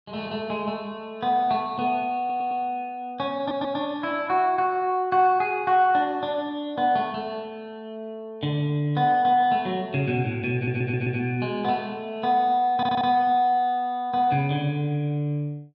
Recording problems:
audio stuttering; 4 times, first at 2 s

